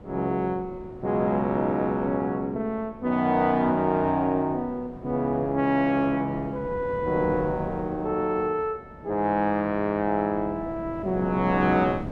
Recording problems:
wind on the microphone; below 430 Hz, SNR 16 dB

